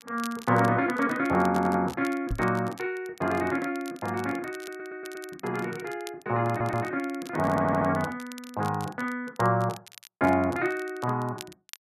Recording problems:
crackling; vinyl, SNR 20 dB
stutter; 4 times, first at 1.5 s
knock on the microphone; at 2.5 s; peak -1 dB vs average level

